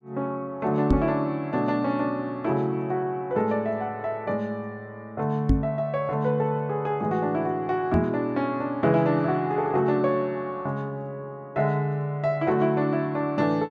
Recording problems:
microphone thump; at 1 s, at 5.5 s and at 8 s; peak +7 dB vs average level

